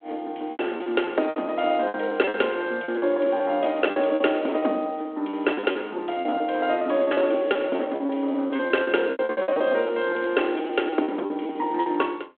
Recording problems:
phone line; 240 Hz to 3.4 kHz, G.726
lost packets; 18% of the sound replaced, filled with repeated pitch periods

